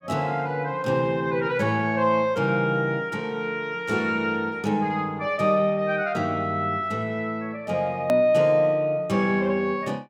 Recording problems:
edit click; at 8 s

